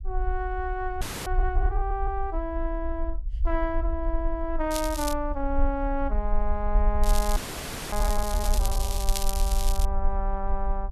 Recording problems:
low-frequency rumble; below 46 Hz, SNR -1 dB
audio freezing; at 1 s and at 7.5 s for 0.5 s
crackling; at 4.5 s and from 7 to 10 s; loose cable, SNR 4 dB

